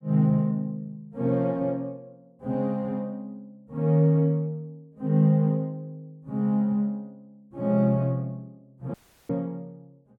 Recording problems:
dropout; at 9 s

